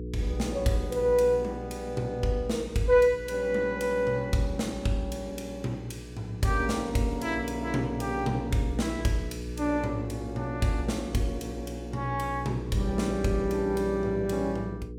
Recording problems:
electrical hum; 60 Hz, harmonics up to 480 Hz, SNR 10 dB

